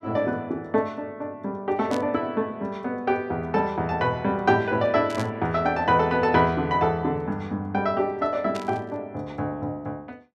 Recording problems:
burst of static; at 2 s, at 5 s and at 8.5 s; peak -7 dB vs average level

